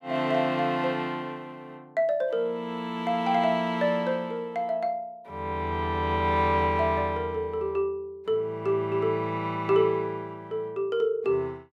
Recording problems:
none

